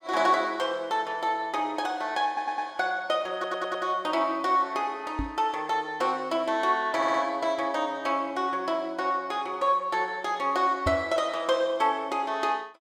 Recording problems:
stutter; at 2.5 s, at 3.5 s and at 7 s
microphone bump; at 5 s and at 11 s; peak 0 dB vs average level

